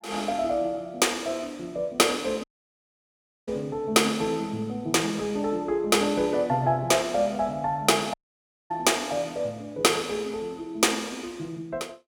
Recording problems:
audio cutting out; at 2.5 s for 1 s and at 8 s for 0.5 s

